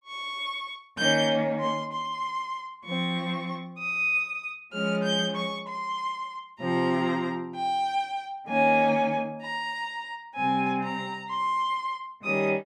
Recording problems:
none

